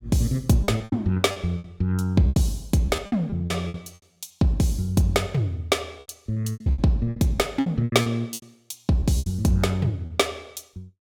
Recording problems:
packet loss; 14% of the sound replaced, filled with repeated pitch periods

